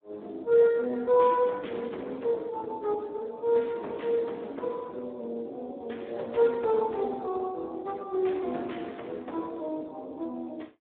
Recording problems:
phone line; 190 Hz to 3.8 kHz, Speex

